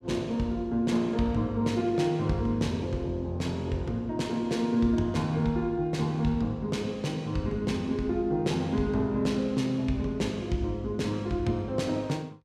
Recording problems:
none

